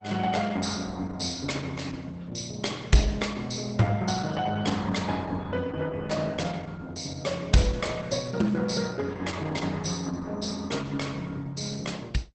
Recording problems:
lossy codec; Opus, log-spectral distance 6 dB, nothing above 8.2 kHz

